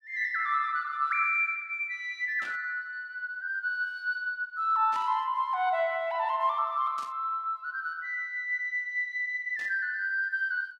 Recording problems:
burst of static; 4 times, first at 2.5 s; peak -12 dB vs average level

